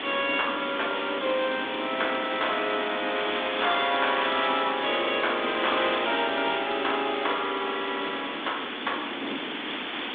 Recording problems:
phone line; 220 Hz to 3.6 kHz, G.726
hiss; SNR 5 dB
wind noise; below 570 Hz, SNR 15 dB

